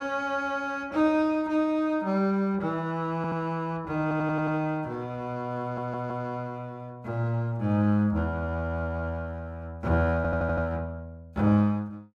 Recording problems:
audio stuttering; 4 times, first at 3 s

